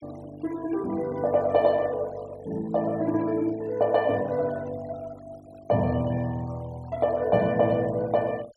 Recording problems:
noise reduction artefacts; signal-to-artefact ratio 23 dB

